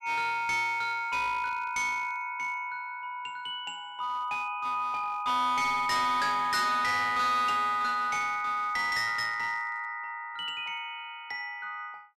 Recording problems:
distorted audio; hard clipping, uneven, signal-to-distortion ratio 10 dB

